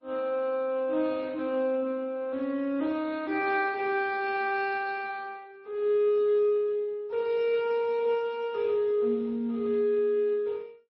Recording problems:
lossy codec; Speex, then MP3, log-spectral distance 2 dB

